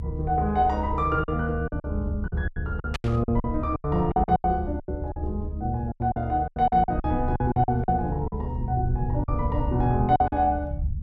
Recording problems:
rumble; below 94 Hz, SNR 5 dB
lost packets; 13% of the sound replaced, filled with silence
static burst; at 3 s; peak -1 dB vs average level

